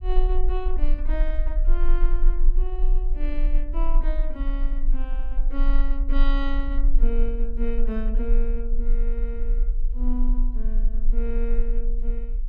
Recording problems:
low-frequency rumble; below 32 Hz, strongest tone 20 Hz, SNR -8 dB

